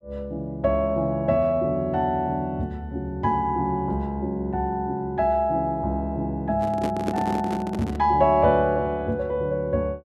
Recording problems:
microphone handling noise; from 6.5 to 8 s; peak 0 dB vs average level

